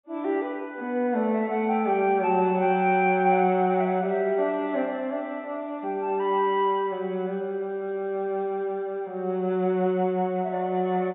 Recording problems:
treble missing; nothing above 4 kHz

